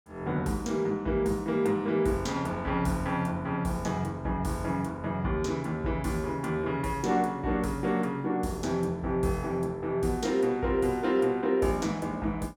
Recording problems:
none

